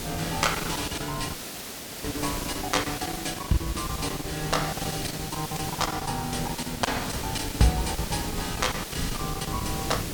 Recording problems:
hiss; slope -2 dB per octave, SNR 5 dB
wind on the microphone; below 230 Hz, SNR 9 dB
packet loss; 14% of the sound replaced, filled with silence
audio cutting out; at 1.5 s for 0.5 s

